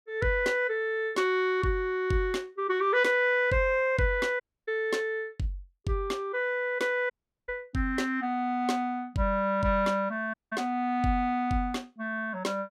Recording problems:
audio cutting out; at 4.5 s, at 7 s and at 10 s

